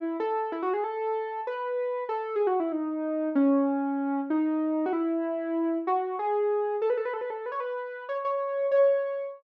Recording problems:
none

